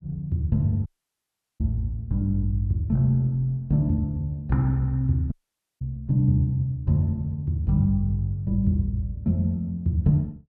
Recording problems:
dropout; at 1 s for 0.5 s and at 5.5 s

